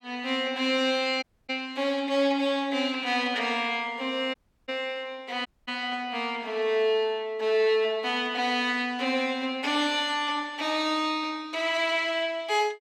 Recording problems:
dropout; at 1 s, at 4.5 s and at 5.5 s

